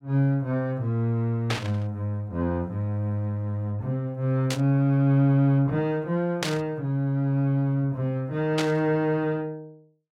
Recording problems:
static burst; 4 times, first at 1.5 s; peak +1 dB vs average level

